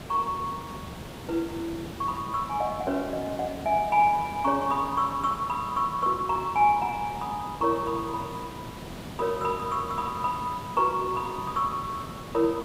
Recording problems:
hiss; slope -5 dB per octave, SNR 12 dB

